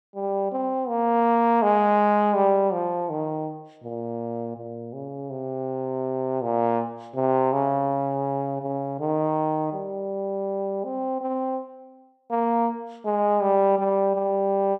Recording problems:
none

